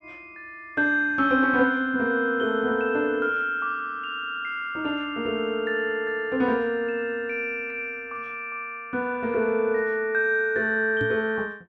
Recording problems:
microphone bump; at 11 s; peak -3 dB vs average level

